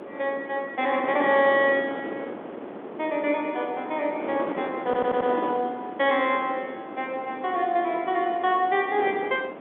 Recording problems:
telephone audio; 260 Hz to 3.6 kHz, G.711
wind noise; below 720 Hz, SNR 10 dB
audio stuttering; at 5 s

